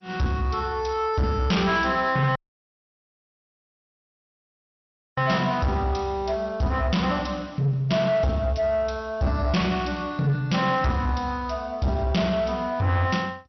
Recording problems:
lossy codec; MP2, log-spectral distance 3 dB, nothing above 5.8 kHz
distortion; soft clipping, signal-to-distortion ratio 11 dB
dropout; at 2.5 s for 3 s

